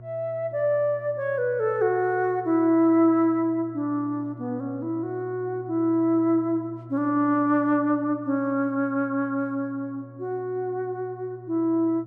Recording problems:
hum; 60 Hz, harmonics up to 720 Hz, SNR 19 dB

